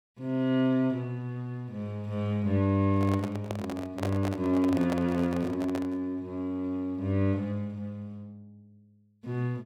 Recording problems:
microphone handling noise; from 3 to 6 s; peak -1 dB vs average level

